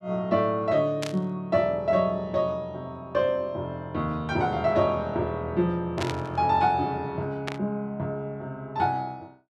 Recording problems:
static burst; at 1 s, at 6 s and at 7.5 s; peak -1 dB vs average level

